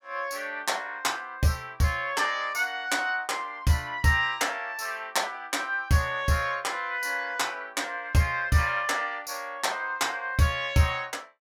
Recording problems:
none

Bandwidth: 18 kHz